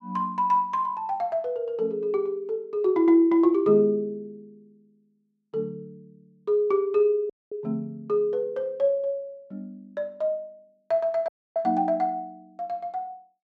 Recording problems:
dropout; at 7.5 s and at 11 s

